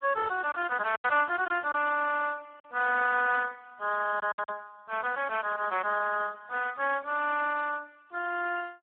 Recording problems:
phone line; 300 Hz to 2.8 kHz, Speex
lost packets; 4% of the sound replaced, filled with silence

